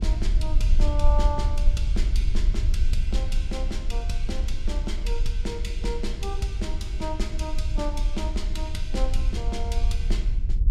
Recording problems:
low-frequency rumble; below 54 Hz, SNR -6 dB

